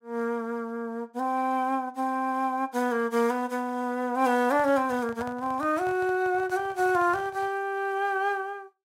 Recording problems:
handling noise; from 4.5 to 7.5 s; peak -10 dB vs average level

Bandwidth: 16 kHz